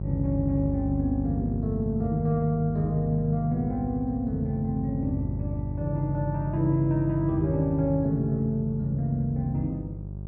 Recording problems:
treble missing; nothing above 6.4 kHz
electrical hum; 50 Hz, harmonics up to 600 Hz, SNR 7 dB

